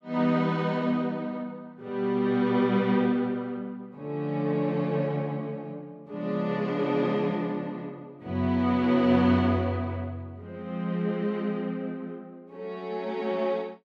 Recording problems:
none

